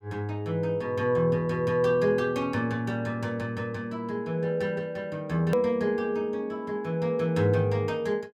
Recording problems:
hard cut with a click; at 5.5 s

